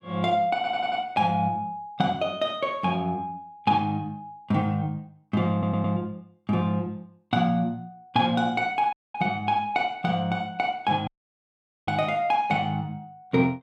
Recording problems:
stutter; at 0.5 s and at 5.5 s
dropout; at 9 s and at 11 s for 1 s

